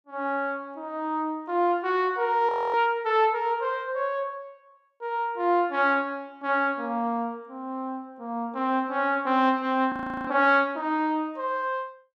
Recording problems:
frozen audio; at 2.5 s and at 10 s

